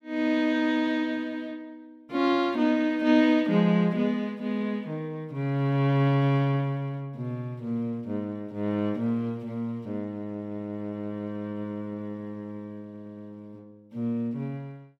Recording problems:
stutter; at 13 s

